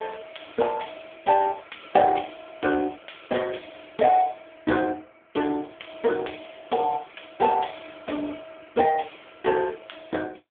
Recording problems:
phone line; 190 Hz to 3.4 kHz, AMR-NB

